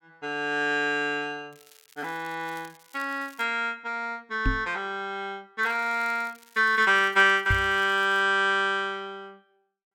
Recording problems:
crackling; from 1.5 to 3.5 s and from 5.5 to 8 s; loose cable, SNR 27 dB
knock on the microphone; at 4.5 s and at 7.5 s; peak +1 dB vs average level

